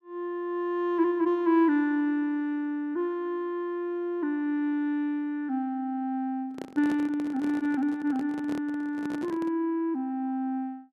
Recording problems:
handling noise; from 6.5 to 9.5 s; peak -4 dB vs average level

